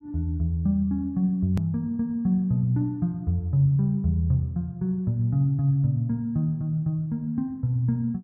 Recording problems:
edit click; at 1.5 s

